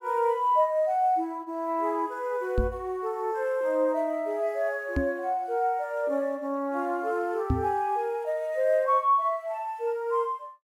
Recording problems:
microphone bump; at 2.5 s, at 5 s and at 7.5 s; peak +4 dB vs average level

